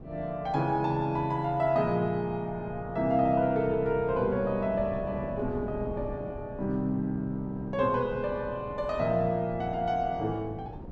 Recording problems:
wind noise; below 320 Hz, SNR 14 dB

